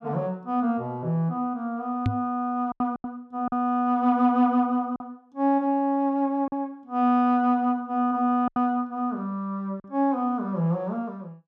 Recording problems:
lost packets; 4% of the sound replaced, filled with silence
microphone bump; at 2 s; peak +4 dB vs average level

